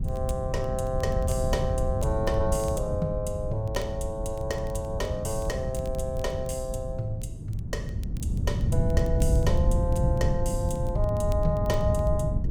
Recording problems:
wind noise; below 130 Hz, SNR -1 dB
crackle; vinyl, SNR 24 dB

